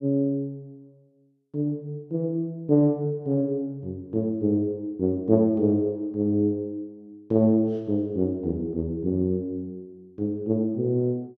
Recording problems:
none

